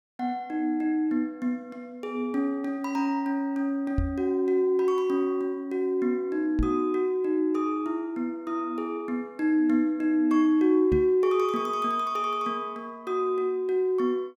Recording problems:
knock on the microphone; at 4 s, at 6.5 s and at 11 s; peak +3 dB vs average level

